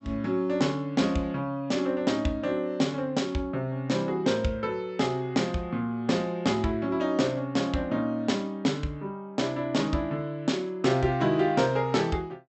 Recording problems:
treble missing; nothing above 7.9 kHz

